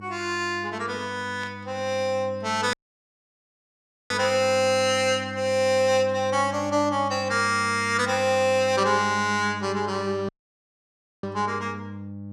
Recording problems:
hum; 50 Hz, harmonics up to 800 Hz, SNR 14 dB
static burst; at 1.5 s; peak -13 dB vs average level
dropout; at 2.5 s for 1.5 s and at 10 s for 1 s

